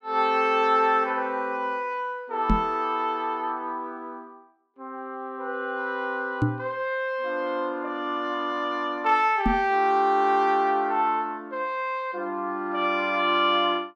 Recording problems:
knock on the microphone; at 2.5 s, at 6.5 s and at 9.5 s; peak +5 dB vs average level

